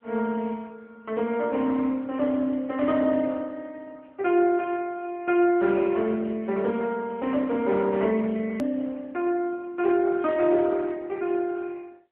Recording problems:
phone line; 220 Hz to 3.5 kHz, AMR-NB
edit click; at 8.5 s

